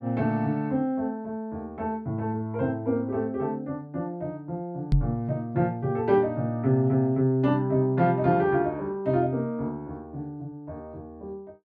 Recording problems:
microphone thump; at 5 s; peak +7 dB vs average level

